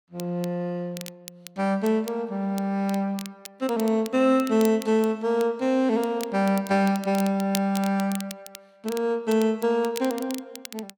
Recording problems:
crackling; vinyl, SNR 17 dB

